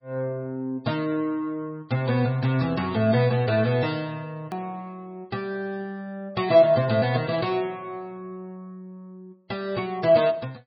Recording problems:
lossy codec; MP3, log-spectral distance 2 dB, nothing above 4.8 kHz
hard cut with a click; at 4.5 s

